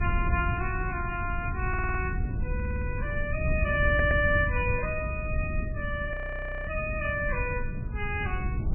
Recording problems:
lossy codec; MP3, log-spectral distance 3 dB, nothing above 2.6 kHz
wind on the microphone; below 120 Hz, SNR 2 dB
stutter; at 1.5 s, at 2.5 s and at 4 s
frozen audio; at 6 s for 0.5 s

